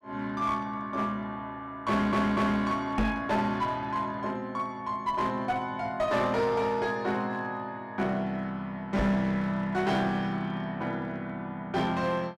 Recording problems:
distortion; hard clipping, uneven, signal-to-distortion ratio 11 dB
stutter; at 2 s
microphone thump; at 3 s and at 9 s; peak +7 dB vs average level

